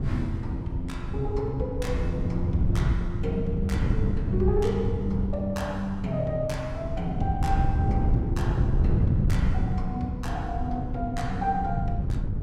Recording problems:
wind noise; below 130 Hz, SNR -1 dB

